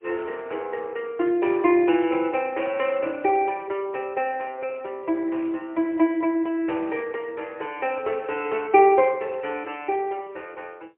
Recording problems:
phone line; 280 Hz to 3.1 kHz, AMR-NB, then MP3

